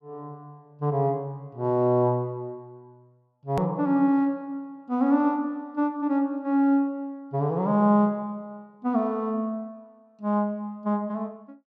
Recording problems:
click at an edit; at 3.5 s

